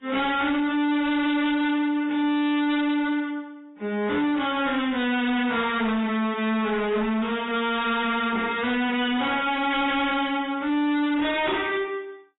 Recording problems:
codec artefacts; AAC, log-spectral distance 4 dB, nothing above 3.7 kHz
distortion; soft clipping, signal-to-distortion ratio 7 dB

